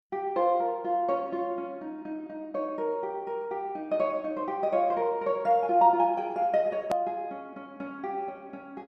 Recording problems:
click at an edit; at 7 s

